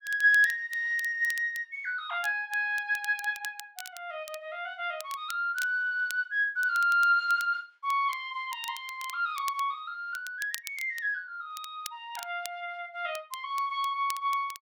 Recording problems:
crackle; vinyl, SNR 16 dB

